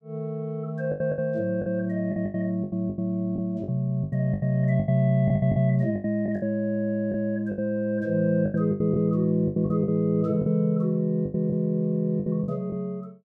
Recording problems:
lost packets; 13% of the sound replaced, filled with the last packet

